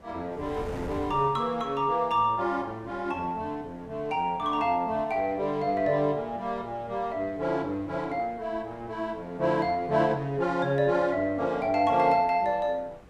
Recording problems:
wind noise; below 690 Hz, SNR 21 dB

